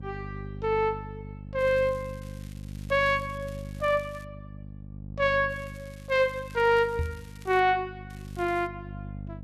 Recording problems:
hum; 50 Hz, harmonics up to 550 Hz, SNR 14 dB
crackling; from 1.5 to 4 s, from 5.5 to 7.5 s and at 8 s; loose cable, SNR 27 dB
knock on the microphone; at 7 s; peak -1 dB vs average level

